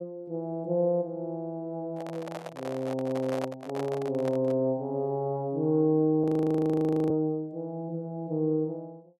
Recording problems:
handling noise; from 2 to 4.5 s; peak -2 dB vs average level
frozen audio; at 6 s for 1 s

